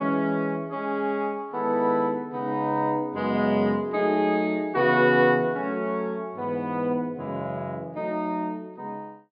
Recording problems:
treble missing; nothing above 4.9 kHz

